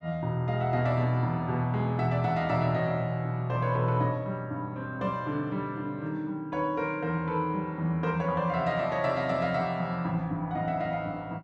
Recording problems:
none

